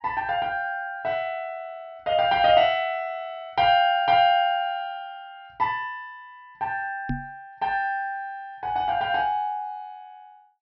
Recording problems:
low-pass filter; nothing above 5.7 kHz
microphone thump; at 7 s; peak -1 dB vs average level

